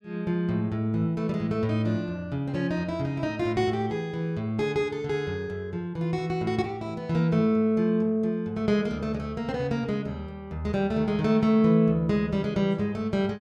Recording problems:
none

